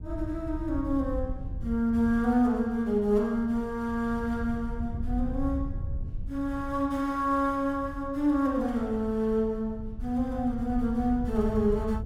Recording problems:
wind on the microphone; below 90 Hz, SNR 10 dB

